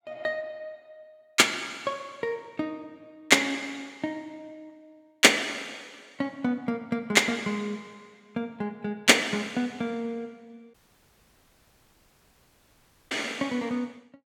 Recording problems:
audio cutting out; at 11 s for 2.5 s

